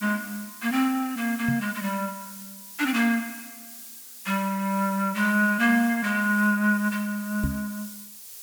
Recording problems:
background hiss; SNR 15 dB
microphone bump; at 1.5 s and at 7.5 s; peak +1 dB vs average level

